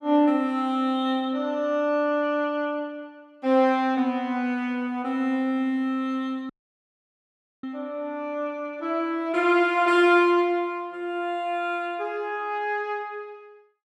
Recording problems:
dropout; at 6.5 s for 1 s

